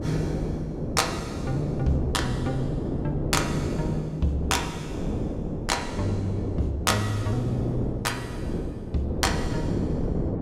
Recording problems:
wind noise; below 380 Hz, SNR 2 dB

